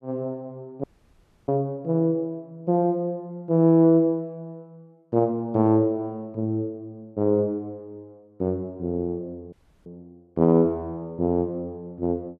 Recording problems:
audio cutting out; at 1 s for 0.5 s and at 9.5 s

